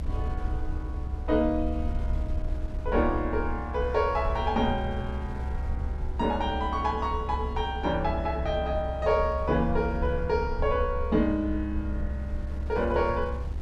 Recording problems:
rumble; below 68 Hz, strongest tone 66 Hz, SNR 6 dB
wind noise; below 110 Hz, SNR 14 dB

